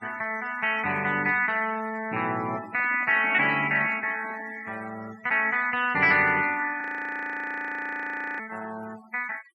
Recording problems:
denoising artefacts; signal-to-artefact ratio 19 dB
handling noise; from 2.5 to 4.5 s; peak -13 dB vs average level
frozen audio; at 7 s for 1.5 s

